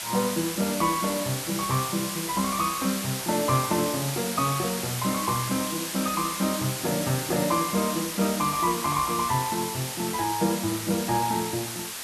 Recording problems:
background hiss; slope +1 dB per octave, SNR 4 dB

